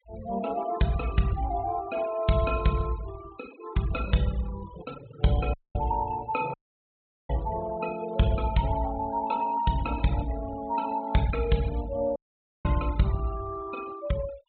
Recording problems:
treble missing; nothing above 4 kHz
denoising artefacts; signal-to-artefact ratio 17 dB
dropout; at 5.5 s, at 6.5 s for 1 s and at 12 s

